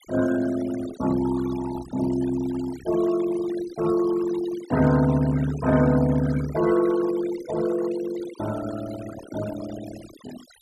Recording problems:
denoising artefacts; signal-to-artefact ratio 14 dB

